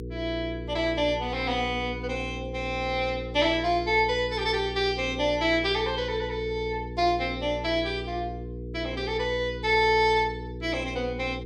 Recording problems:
electrical hum; 60 Hz, harmonics up to 480 Hz, SNR 10 dB

